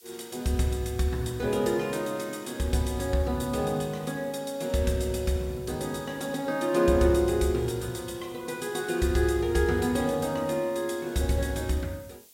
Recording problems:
background hiss; SNR 25 dB

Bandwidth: 16 kHz